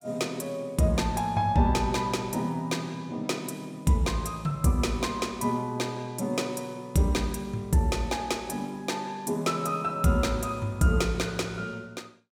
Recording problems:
none

